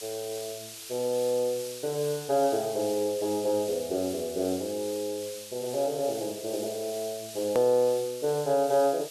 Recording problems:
hiss; slope +3 dB per octave, SNR 12 dB
hard cut with a click; at 7.5 s

